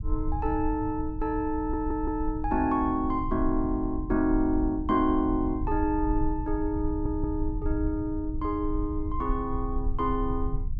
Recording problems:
rumble; below 68 Hz, SNR 6 dB
stutter; at 1.5 s and at 7 s

